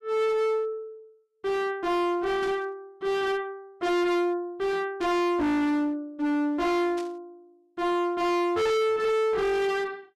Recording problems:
distorted audio; hard clipping, uneven, signal-to-distortion ratio 6 dB
burst of static; at 2.5 s, at 5 s and at 7 s; peak -13 dB vs average level

